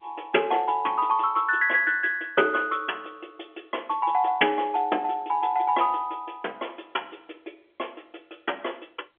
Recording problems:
telephone audio; 260 Hz to 3.4 kHz, G.711

